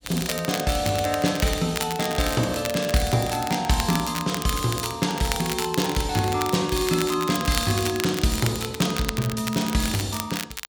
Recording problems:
crackling; vinyl, SNR 8 dB

